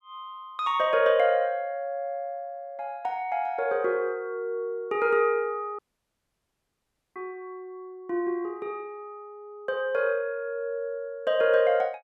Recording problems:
dropout; at 6 s for 1.5 s

